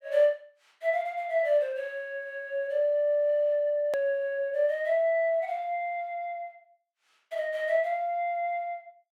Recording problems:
hard cut with a click; at 4 s

